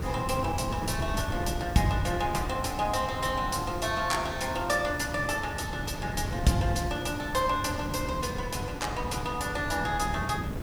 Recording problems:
background hiss; slope 0 dB per octave, SNR 25 dB
wind noise; below 250 Hz, SNR 6 dB

